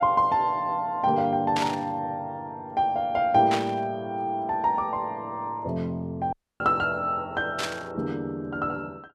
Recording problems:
burst of static; at 1.5 s, at 3.5 s and at 7.5 s; peak +1 dB vs average level
dropout; at 6.5 s

